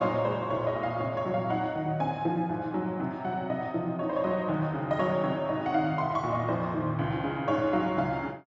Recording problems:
treble missing; nothing above 7.5 kHz

